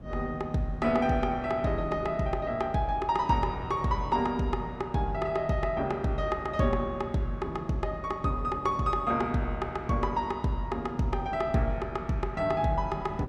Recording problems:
wind on the microphone; below 300 Hz, SNR 17 dB

